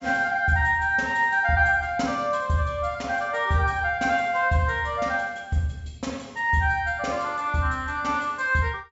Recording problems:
treble cut off; nothing above 8 kHz

